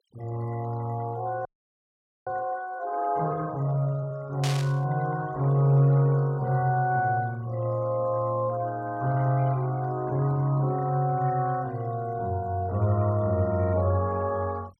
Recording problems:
noise reduction artefacts; signal-to-artefact ratio 25 dB
audio freezing; at 1.5 s for 1 s
burst of static; at 4.5 s; peak -3 dB vs average level

